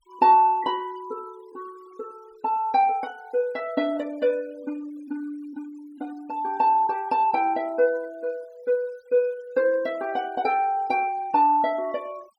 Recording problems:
denoising artefacts; signal-to-artefact ratio 27 dB

